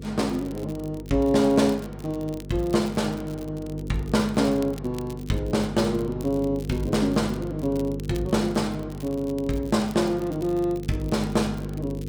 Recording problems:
electrical hum; 50 Hz, harmonics up to 500 Hz, SNR 10 dB
crackling; vinyl, SNR 23 dB

